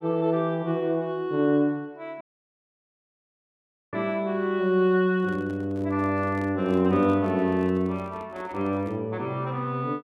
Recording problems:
dropout; at 2 s for 1.5 s
handling noise; from 5 to 9 s; peak -12 dB vs average level

